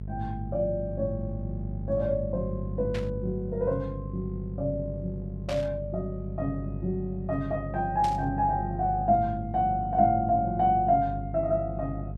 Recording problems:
electrical hum; 50 Hz, harmonics up to 450 Hz, SNR 8 dB
burst of static; at 3 s, at 5.5 s and at 8 s; peak -6 dB vs average level

